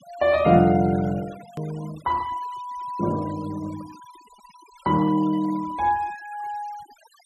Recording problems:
denoising artefacts; signal-to-artefact ratio 22 dB
click at an edit; at 1.5 s

